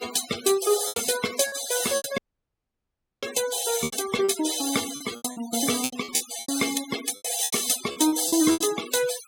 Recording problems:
denoising artefacts; signal-to-artefact ratio 10 dB
lost packets; 13% of the sound replaced, filled with repeated pitch periods
dropout; at 2 s for 1 s

